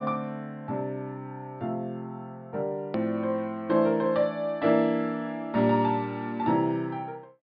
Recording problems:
treble missing; nothing above 5.2 kHz
edit click; at 3 s

